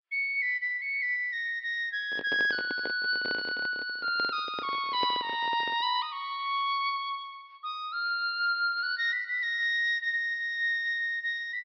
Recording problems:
low-pass filter; nothing above 5.5 kHz
handling noise; from 2 to 6 s; peak -4 dB vs average level

